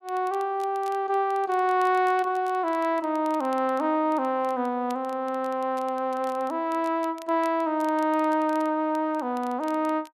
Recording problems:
crackle; vinyl, SNR 26 dB

